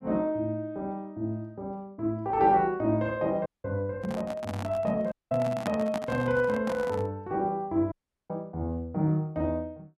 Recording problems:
audio cutting out; at 3.5 s, at 5 s and at 8 s
handling noise; from 4 to 7 s; peak +1 dB vs average level

